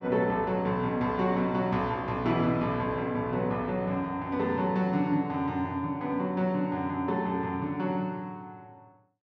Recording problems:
none

